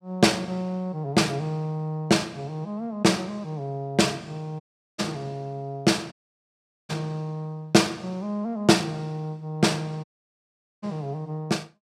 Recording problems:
dropout; at 4.5 s, at 6 s for 1 s and at 10 s for 1 s

